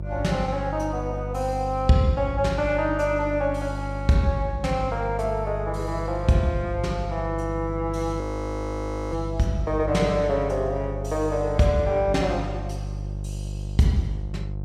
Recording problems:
hum; 50 Hz, harmonics up to 550 Hz, SNR 7 dB
frozen audio; at 8 s for 1 s

